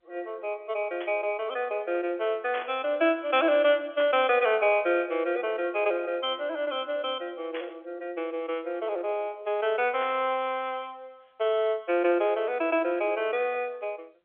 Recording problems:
phone line; 300 Hz to 3.5 kHz, G.711
burst of static; 5 times, first at 1 s; peak -6 dB vs average level

